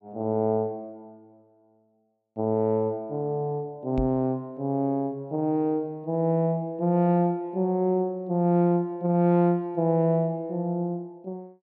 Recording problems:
microphone thump; at 4 s; peak -2 dB vs average level

